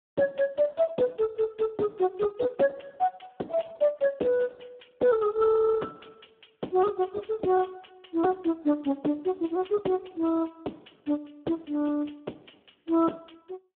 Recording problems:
telephone audio; 240 Hz to 3.5 kHz, Speex

